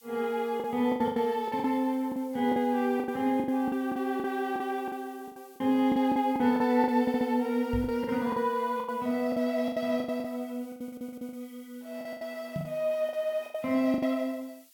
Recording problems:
background hiss; slope +5 dB per octave, SNR 27 dB
lost packets; 14% of the sound replaced, filled with the last packet
stutter; at 7 s, at 11 s and at 13 s
microphone thump; at 7.5 s and at 13 s; peak -2 dB vs average level

